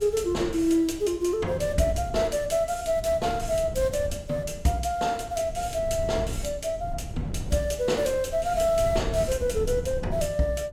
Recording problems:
wind noise; below 130 Hz, SNR 11 dB

